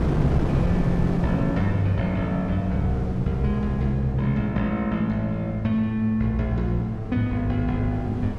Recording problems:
wind on the microphone; below 300 Hz, SNR 7 dB

